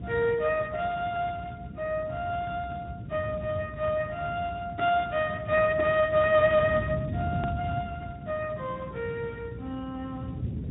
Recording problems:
treble missing; nothing above 3.7 kHz
codec artefacts; Speex, log-spectral distance 3 dB
hum; 60 Hz, harmonics up to 600 Hz, SNR 19 dB
rumble; below 210 Hz, SNR 9 dB
hard cut with a click; at 7.5 s

